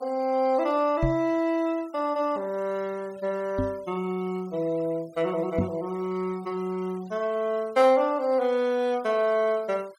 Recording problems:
denoising artefacts; signal-to-artefact ratio 25 dB
microphone thump; at 1 s, at 3.5 s and at 5.5 s; peak +3 dB vs average level

